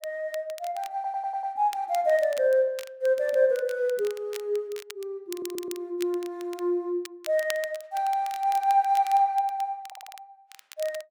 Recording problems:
crackle; vinyl, SNR 18 dB
stutter; at 1 s, at 5.5 s and at 10 s

